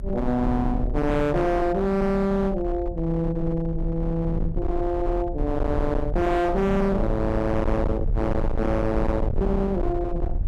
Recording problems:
distortion; hard clipping, signal-to-distortion ratio 7 dB
low-frequency rumble; below 110 Hz, SNR 5 dB

